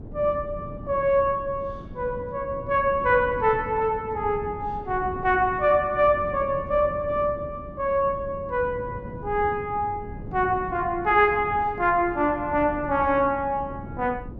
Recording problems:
wind noise; below 250 Hz, SNR 14 dB

